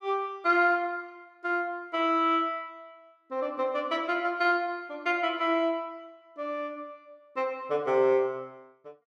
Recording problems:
none

